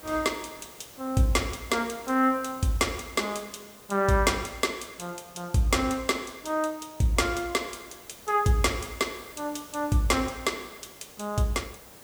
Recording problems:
hiss; slope -4 dB per octave, SNR 20 dB

